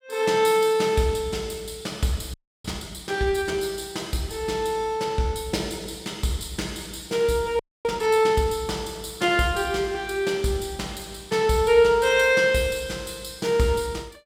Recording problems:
audio freezing; at 2.5 s and at 7.5 s

